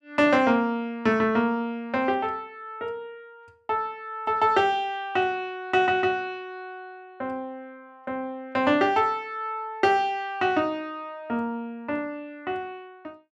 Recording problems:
none

